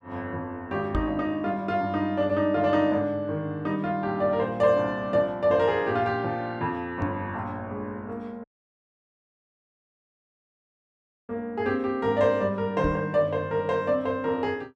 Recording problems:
microphone bump; at 1 s, at 7 s and at 13 s; peak 0 dB vs average level
dropout; at 8.5 s for 3 s

